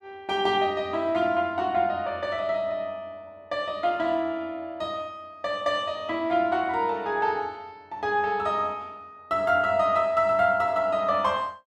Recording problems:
none

